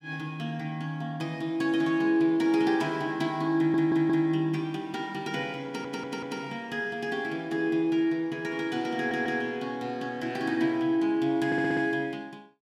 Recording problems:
audio stuttering; 4 times, first at 3.5 s

